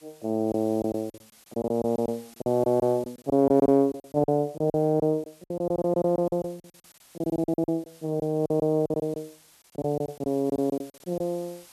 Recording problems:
hiss; slope +1 dB per octave, SNR 26 dB
lost packets; 17% of the sound replaced, filled with silence

